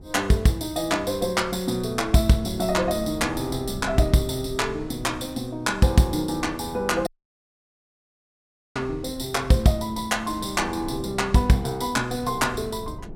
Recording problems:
wind noise; below 250 Hz, SNR 16 dB
audio cutting out; at 7 s for 1.5 s

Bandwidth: 16.5 kHz